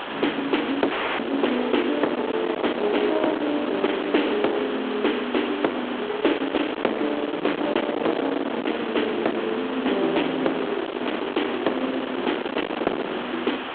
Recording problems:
phone line; 260 Hz to 3.6 kHz, G.726
distorted audio; hard clipping, signal-to-distortion ratio 11 dB
hiss; SNR 9 dB
wind on the microphone; below 930 Hz, SNR 8 dB
dropout; at 1 s

